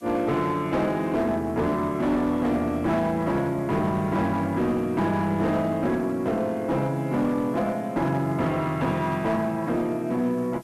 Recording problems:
distorted audio; hard clipping, uneven, signal-to-distortion ratio 11 dB
background hiss; slope +3 dB per octave, SNR 30 dB

